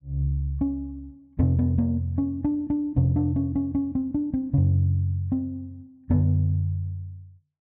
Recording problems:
none

